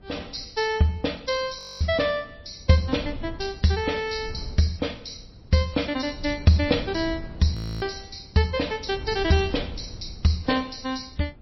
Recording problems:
codec artefacts; MP3, log-spectral distance 7 dB, nothing above 5.7 kHz
wind noise; below 130 Hz, SNR 16 dB
frozen audio; at 1.5 s and at 7.5 s

